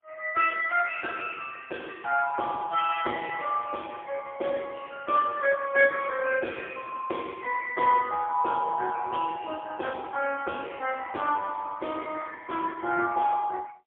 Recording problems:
telephone audio; 280 Hz to 3.2 kHz, AMR-NB, then MP3

